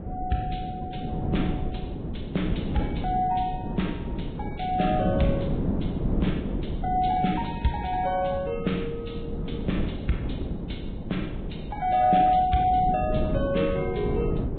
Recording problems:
low-pass filter; nothing above 3.9 kHz
lossy codec; Vorbis, log-spectral distance 3 dB
wind on the microphone; below 280 Hz, SNR 4 dB

